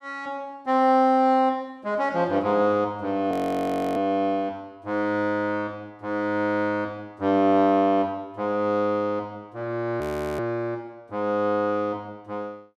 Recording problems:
audio freezing; at 3.5 s for 0.5 s and at 10 s

